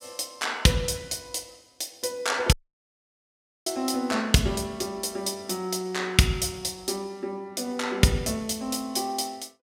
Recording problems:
audio cutting out; at 2.5 s for 1 s

